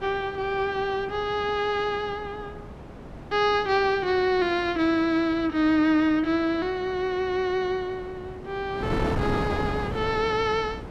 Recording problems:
wind on the microphone; below 590 Hz, SNR 11 dB

